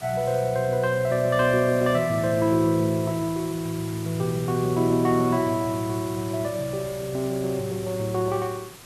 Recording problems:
hiss; slope -2 dB per octave, SNR 16 dB

